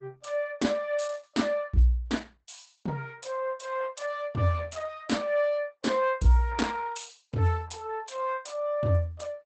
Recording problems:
codec artefacts; Opus, log-spectral distance 4 dB, nothing above 8 kHz

